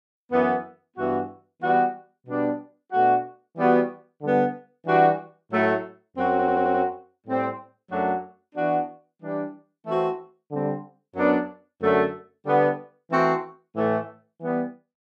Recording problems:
audio stuttering; at 6.5 s

